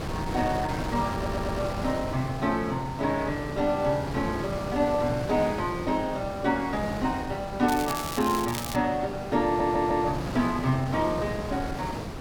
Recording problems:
wind on the microphone; below 780 Hz, SNR 7 dB
stutter; at 1 s and at 9.5 s
crackling; from 7.5 to 9 s; loose cable, SNR 9 dB

